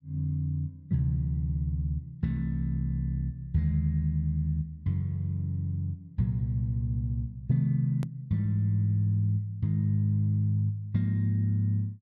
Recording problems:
edit click; at 8 s

